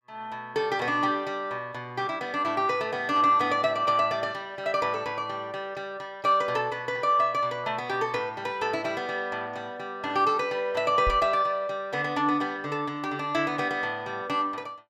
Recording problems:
microphone thump; at 11 s; peak -1 dB vs average level

